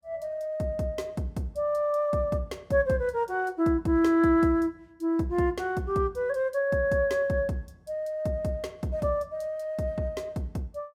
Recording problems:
none

